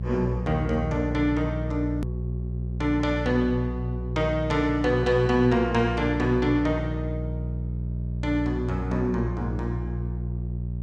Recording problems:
hum; 60 Hz, harmonics up to 420 Hz, SNR 5 dB
hard cut with a click; at 2 s

